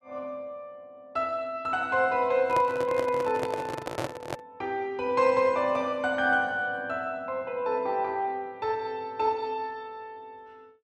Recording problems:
microphone handling noise; from 2.5 to 4.5 s; peak 0 dB vs average level

